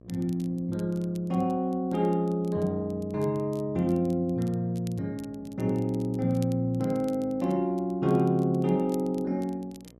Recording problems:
electrical hum; 60 Hz, harmonics up to 1.1 kHz, SNR 26 dB
crackling; vinyl, SNR 27 dB

